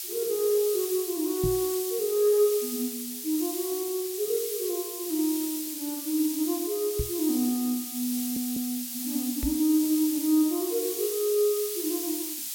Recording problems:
hiss; slope +6 dB per octave, SNR 5 dB
microphone bump; at 1.5 s, at 7 s and at 9.5 s; peak +1 dB vs average level
stutter; at 8 s

